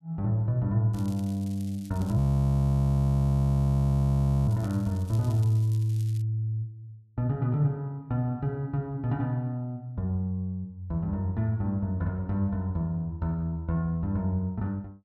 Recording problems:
crackling; from 1 to 6 s; loose cable, SNR 25 dB
frozen audio; at 2 s for 2.5 s

